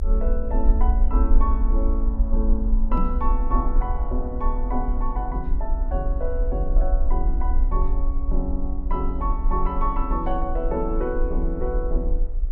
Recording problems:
hum; 60 Hz, harmonics up to 1.9 kHz, SNR 24 dB
rumble; below 46 Hz, strongest tone 28 Hz, SNR -4 dB
knock on the microphone; at 3 s; peak +5 dB vs average level

